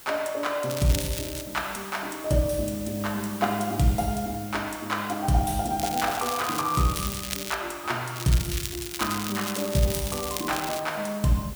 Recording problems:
background hiss; slope -1 dB per octave, SNR 14 dB
crackling; at 0.5 s, from 6 to 7.5 s and from 8 to 11 s; loose cable, SNR 6 dB

